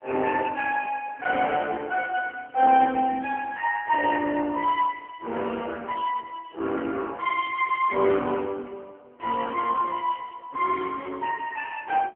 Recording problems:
telephone audio; 240 Hz to 2.6 kHz, AMR-NB

